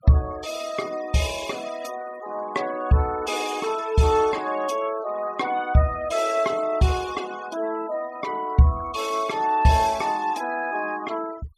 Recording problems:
noise reduction artefacts; signal-to-artefact ratio 18 dB

